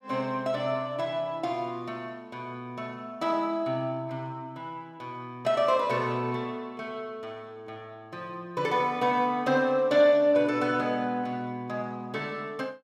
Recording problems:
none

